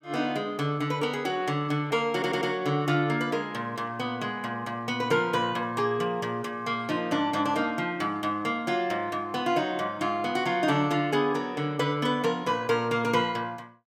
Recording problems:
stutter; at 2 s

